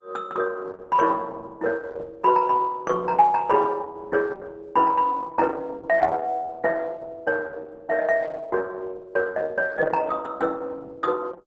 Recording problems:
lossy codec; Opus, log-spectral distance 4 dB

